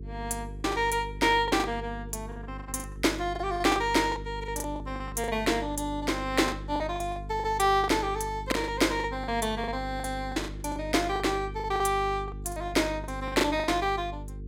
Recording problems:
mains hum; 50 Hz, harmonics up to 450 Hz, SNR 12 dB
packet loss; 13% of the sound replaced, filled with the last packet

